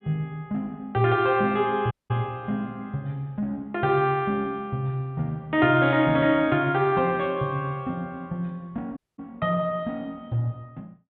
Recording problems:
treble missing; nothing above 4 kHz
audio cutting out; at 2 s and at 9 s

